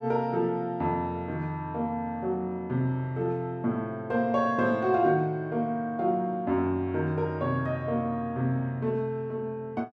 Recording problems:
none

